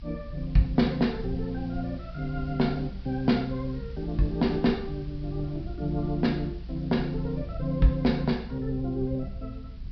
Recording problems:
treble cut off; nothing above 5.5 kHz
hiss; SNR 28 dB
low-frequency rumble; below 76 Hz, SNR 11 dB

